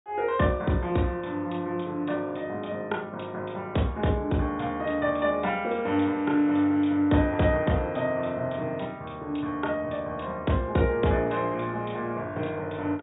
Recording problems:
treble missing; nothing above 4 kHz

